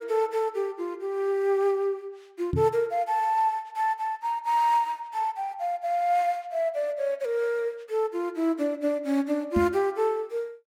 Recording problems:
microphone thump; at 2.5 s and at 9.5 s; peak +3 dB vs average level

